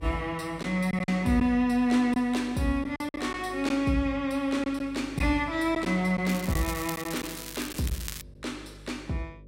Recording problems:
hum; 50 Hz, harmonics up to 600 Hz, SNR 21 dB
lost packets; 4% of the sound replaced, filled with silence
crackle; from 6.5 to 8 s; loose cable, SNR 10 dB

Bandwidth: 16 kHz